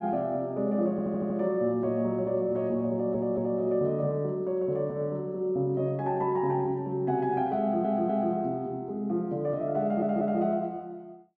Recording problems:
audio stuttering; 4 times, first at 1 s

